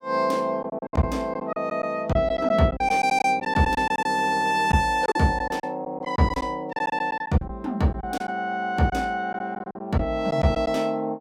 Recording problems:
lost packets; 10% of the sound replaced, filled with silence

